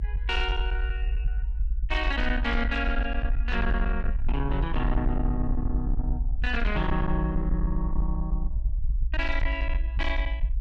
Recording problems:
distorted audio; soft clipping, signal-to-distortion ratio 11 dB
rumble; below 56 Hz, SNR 0 dB

